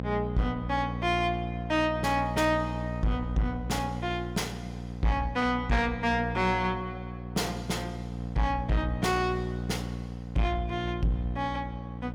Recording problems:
distortion; soft clipping, signal-to-distortion ratio 7 dB
hum; 60 Hz, harmonics up to 1 kHz, SNR 6 dB

